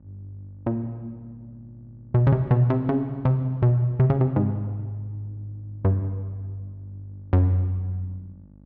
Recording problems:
mains hum; 50 Hz, harmonics up to 650 Hz, SNR 27 dB

